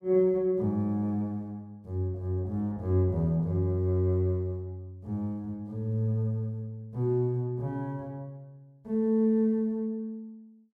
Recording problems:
none

